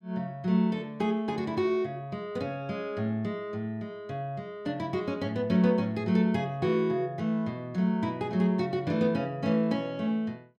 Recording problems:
none

